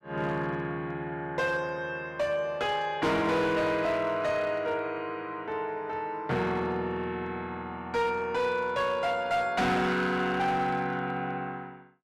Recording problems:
distorted audio; hard clipping, uneven, signal-to-distortion ratio 11 dB

